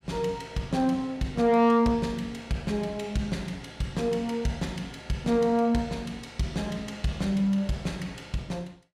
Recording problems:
distortion; soft clipping, signal-to-distortion ratio 12 dB

